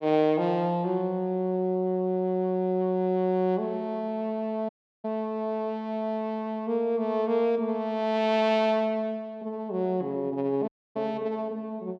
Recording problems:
dropout; at 4.5 s and at 11 s

